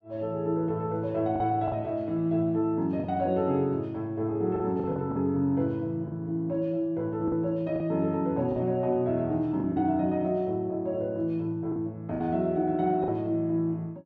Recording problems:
lost packets; 5% of the sound replaced, filled with the last packet

